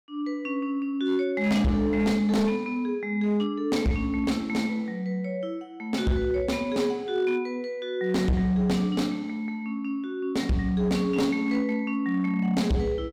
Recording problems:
distorted audio; hard clipping, signal-to-distortion ratio 11 dB

